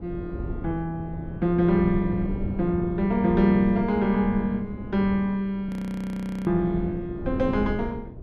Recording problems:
wind noise; below 250 Hz, SNR 10 dB
frozen audio; at 5.5 s for 1 s

